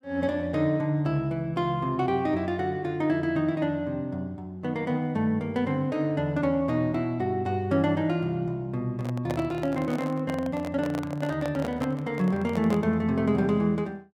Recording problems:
handling noise; from 9 to 13 s; peak -1 dB vs average level

